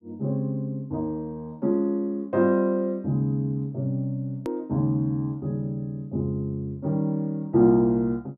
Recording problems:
edit click; at 4.5 s

